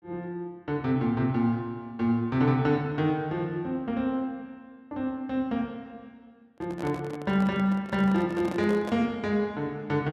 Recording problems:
handling noise; from 6.5 to 9 s; peak -5 dB vs average level

